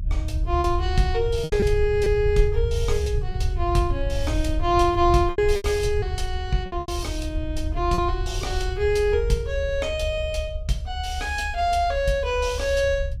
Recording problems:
low-frequency rumble; below 76 Hz, SNR 5 dB
lost packets; 4% of the sound replaced, filled with repeated pitch periods

